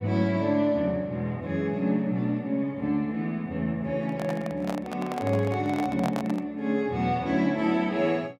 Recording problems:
handling noise; from 4 to 6.5 s; peak -1 dB vs average level

